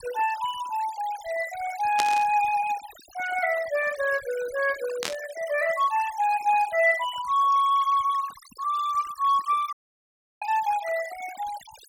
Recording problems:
denoising artefacts; signal-to-artefact ratio 17 dB
burst of static; at 2 s and at 5 s; peak +2 dB vs average level
audio cutting out; at 9.5 s for 0.5 s

